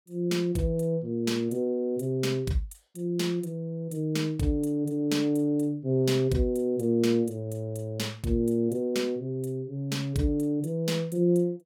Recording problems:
none

